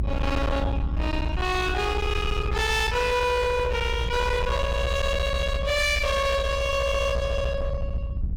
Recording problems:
distortion; hard clipping, uneven, signal-to-distortion ratio 6 dB
rumble; below 110 Hz, SNR 4 dB

